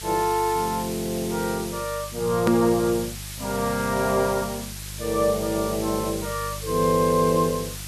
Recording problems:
hum; 50 Hz, harmonics up to 550 Hz, SNR 15 dB
hiss; slope +3 dB per octave, SNR 11 dB
hard cut with a click; at 2.5 s

